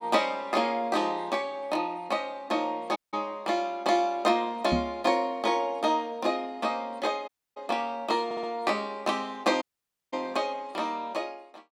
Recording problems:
dropout; at 3 s, at 7.5 s and at 9.5 s for 0.5 s
knock on the microphone; at 4.5 s; peak +5 dB vs average level
stutter; at 8.5 s

